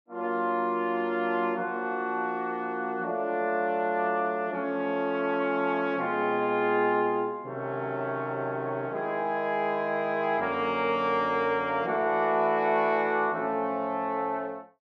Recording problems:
none

